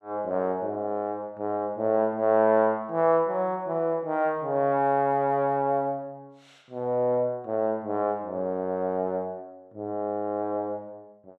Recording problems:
none

